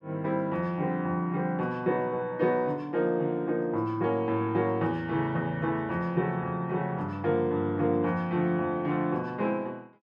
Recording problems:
none

